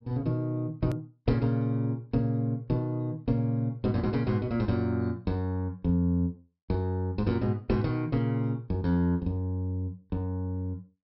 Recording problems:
low-pass filter; nothing above 5.5 kHz
click at an edit; at 1 s

